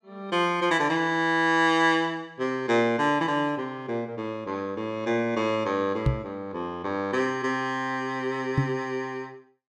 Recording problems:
knock on the microphone; at 6 s and at 8.5 s; peak +6 dB vs average level

